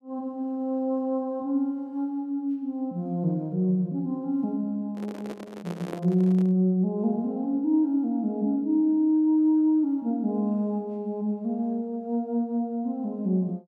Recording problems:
handling noise; from 5 to 6.5 s; peak -5 dB vs average level

